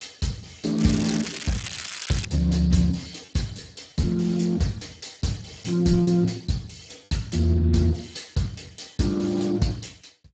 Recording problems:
codec artefacts; Speex, log-spectral distance 7 dB, nothing above 7.6 kHz
packet loss; 1% of the sound replaced, filled with repeated pitch periods
crackling; from 1 to 2.5 s; loose cable, SNR 8 dB

